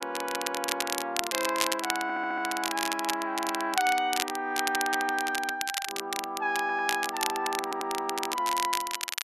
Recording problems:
crackling; vinyl, SNR 3 dB
stutter; at 2 s, at 6.5 s and at 7.5 s

